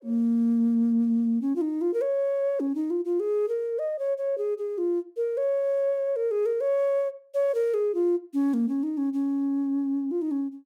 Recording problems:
none

